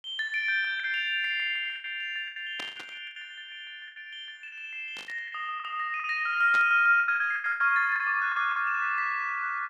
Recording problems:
lost packets; 11% of the sound replaced, filled with the last packet
static burst; at 2.5 s, at 5 s and at 6.5 s; peak -7 dB vs average level

